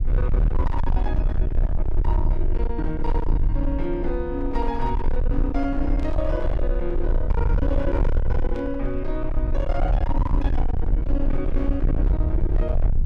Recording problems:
distortion; hard clipping, uneven, signal-to-distortion ratio 6 dB
low-frequency rumble; below 60 Hz, SNR -3 dB
static burst; at 6 s and at 8.5 s; peak -14 dB vs average level

